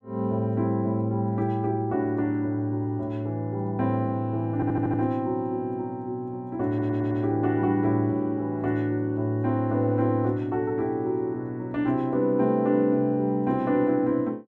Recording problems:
audio stuttering; at 4.5 s and at 6.5 s

